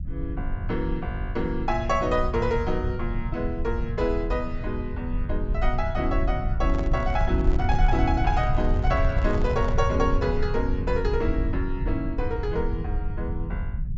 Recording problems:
low-pass filter; nothing above 8 kHz
low-frequency rumble; below 80 Hz, SNR 1 dB
handling noise; from 6.5 to 10 s; peak -6 dB vs average level

